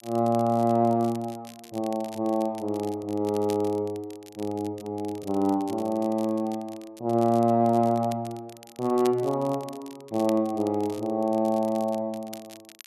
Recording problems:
crackling; vinyl, SNR 22 dB

